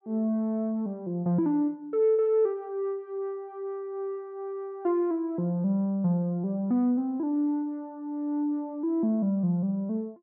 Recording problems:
none

